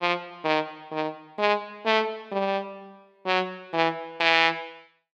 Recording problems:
none

